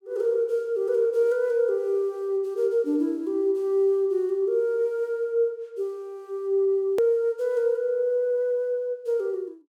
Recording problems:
edit click; at 7 s

